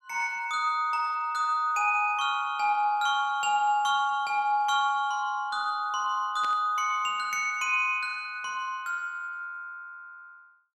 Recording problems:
burst of static; at 6.5 s; peak -11 dB vs average level

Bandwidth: 18.5 kHz